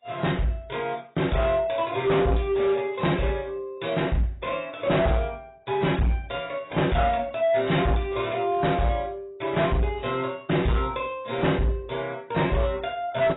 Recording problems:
lossy compression; AAC, log-spectral distance 5 dB, nothing above 3.8 kHz
distortion; hard clipping, signal-to-distortion ratio 10 dB

